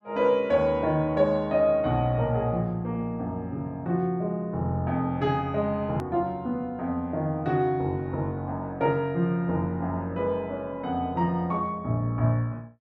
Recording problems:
hard cut with a click; at 6 s

